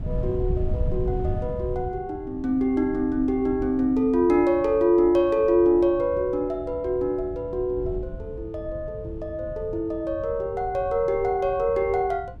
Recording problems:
wind on the microphone; below 120 Hz, SNR 12 dB

